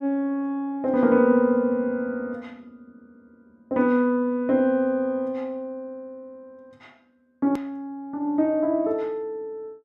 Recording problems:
click at an edit; at 7.5 s

